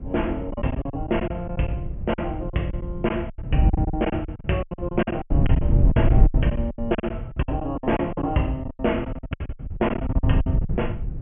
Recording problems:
treble cut off; nothing above 3.1 kHz
wind noise; below 120 Hz, SNR 0 dB
lost packets; 19% of the sound replaced, filled with silence

